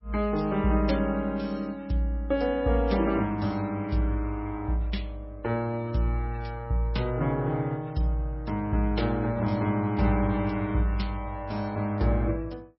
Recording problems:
lossy compression; MP3, log-spectral distance 2 dB, nothing above 5.5 kHz

